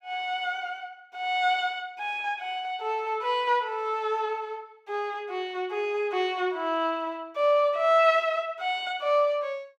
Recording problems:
none

